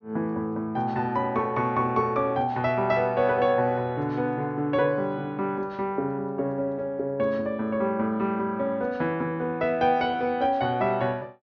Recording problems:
treble cut off; nothing above 6.5 kHz

